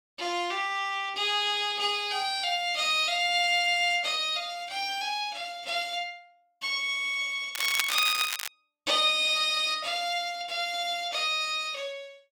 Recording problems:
crackling; at 7.5 s; loose cable, SNR 5 dB

